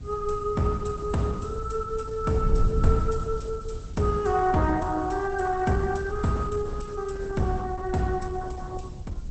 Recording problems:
lossy compression; Opus, log-spectral distance 3 dB, nothing above 8.2 kHz
background hiss; SNR 30 dB
wind noise; below 92 Hz, SNR 8 dB

